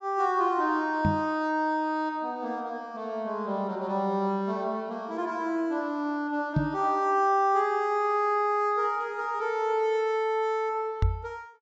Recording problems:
treble cut off; nothing above 8 kHz
microphone bump; at 1 s, at 6.5 s and at 11 s; peak +6 dB vs average level

